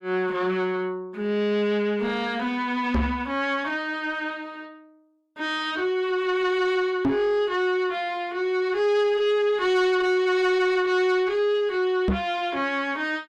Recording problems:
distortion; soft clipping, signal-to-distortion ratio 10 dB
microphone bump; at 3 s, at 7 s and at 12 s; peak +4 dB vs average level

